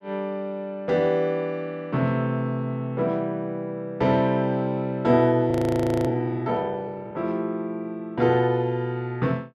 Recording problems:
audio freezing; at 5.5 s for 0.5 s

